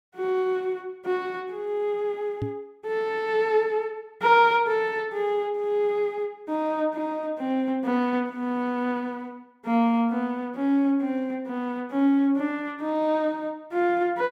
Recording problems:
knock on the microphone; at 2.5 s; peak -1 dB vs average level

